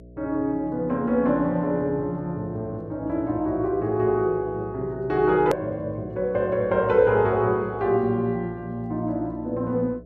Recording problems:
hum; 60 Hz, harmonics up to 660 Hz, SNR 22 dB
edit click; at 5.5 s

